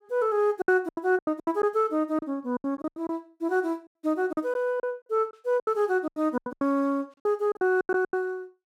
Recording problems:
packet loss; 16% of the sound replaced, filled with silence

